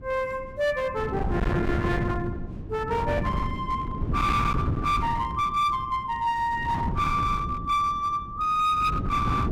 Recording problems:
distortion; hard clipping, uneven, signal-to-distortion ratio 7 dB
wind on the microphone; below 310 Hz, SNR 4 dB

